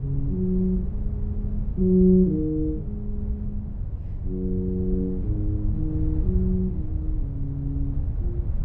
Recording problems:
low-frequency rumble; below 94 Hz, SNR 4 dB

